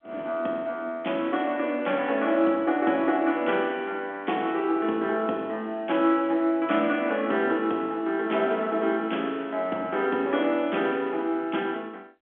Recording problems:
phone line; 240 Hz to 3.5 kHz, G.711

